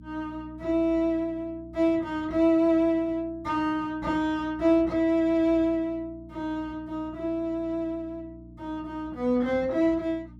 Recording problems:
hum; 60 Hz, harmonics up to 300 Hz, SNR 21 dB

